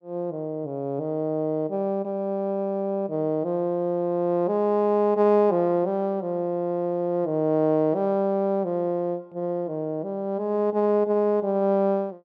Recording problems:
none

